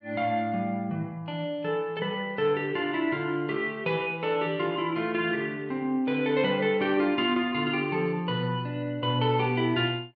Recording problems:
none

